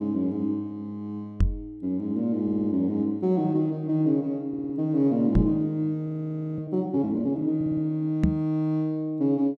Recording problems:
microphone thump; at 1.5 s, at 5.5 s and at 8 s; peak +8 dB vs average level
audio stuttering; at 2.5 s, at 4.5 s and at 7.5 s
frozen audio; at 6 s for 0.5 s

